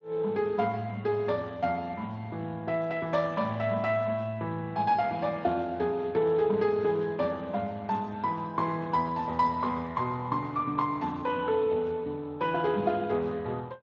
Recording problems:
codec artefacts; Speex, log-spectral distance 3 dB

